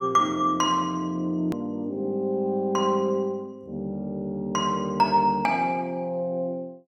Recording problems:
hard cut with a click; at 1.5 s

